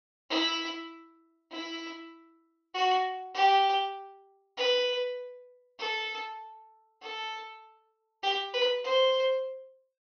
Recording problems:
low-pass filter; nothing above 6.4 kHz

